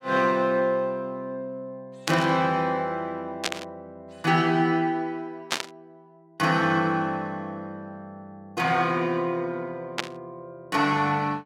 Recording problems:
burst of static; 4 times, first at 2 s; peak +4 dB vs average level

